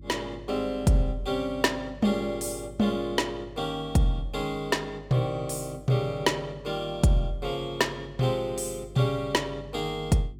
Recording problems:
hum; 50 Hz, harmonics up to 400 Hz, SNR 19 dB

